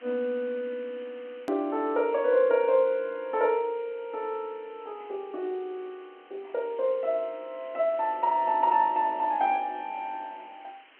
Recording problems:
phone line; 220 Hz to 3.2 kHz, G.711
hiss; SNR 27 dB
hard cut with a click; at 1.5 s

